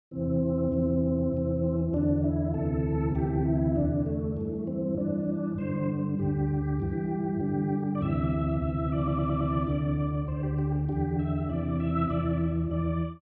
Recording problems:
audio stuttering; at 9 s

